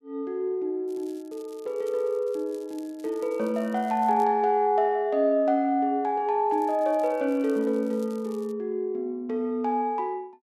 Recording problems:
crackle; from 1 to 4 s and from 6.5 to 8.5 s; loose cable, SNR 28 dB

